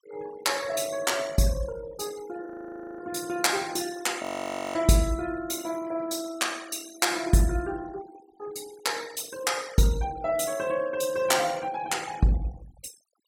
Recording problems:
denoising artefacts; signal-to-artefact ratio 19 dB
audio freezing; at 2.5 s for 0.5 s and at 4 s for 0.5 s

